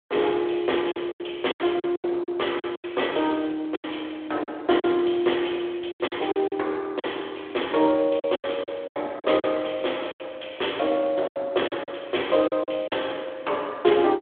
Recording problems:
phone line; 280 Hz to 3.6 kHz, Speex
packet loss; 11% of the sound replaced, filled with silence

